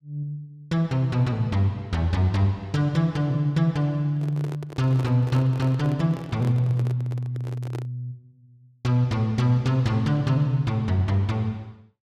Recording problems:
handling noise; from 4 to 8 s; peak -9 dB vs average level

